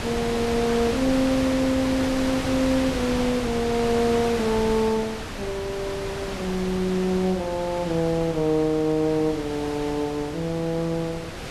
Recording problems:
wind noise; below 2.5 kHz, SNR 7 dB

